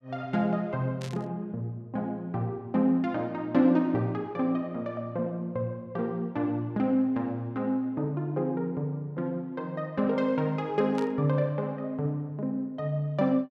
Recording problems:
burst of static; at 1 s and at 11 s; peak -9 dB vs average level

